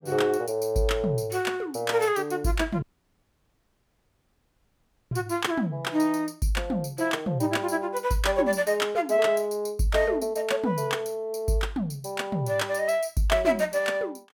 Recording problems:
dropout; at 3 s for 2.5 s

